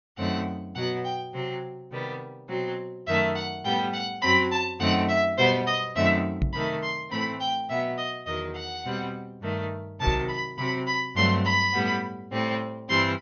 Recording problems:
treble missing; nothing above 6.6 kHz
microphone thump; at 6.5 s and at 10 s; peak +4 dB vs average level

